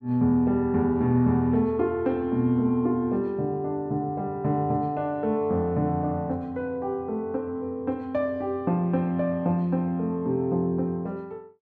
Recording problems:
none

